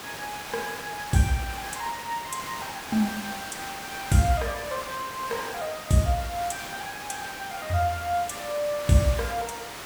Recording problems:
hiss; slope -2 dB per octave, SNR 8 dB

